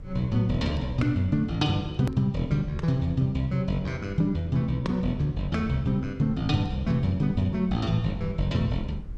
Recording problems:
rumble; below 80 Hz, SNR 17 dB
hard cut with a click; at 2 s

